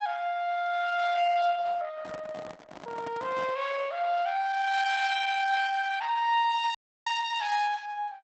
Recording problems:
codec artefacts; Opus, log-spectral distance 4 dB, nothing above 8 kHz
microphone handling noise; from 2 to 3.5 s; peak -10 dB vs average level
audio cutting out; at 7 s

